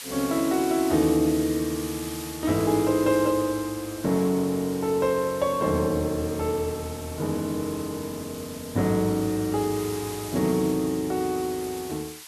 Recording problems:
background hiss; SNR 13 dB

